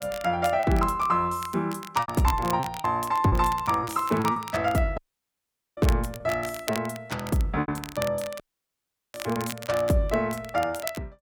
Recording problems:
crackling; vinyl, SNR 14 dB
packet loss; 7% of the sound replaced, filled with repeated pitch periods
audio cutting out; at 5 s for 1 s and at 8.5 s for 0.5 s

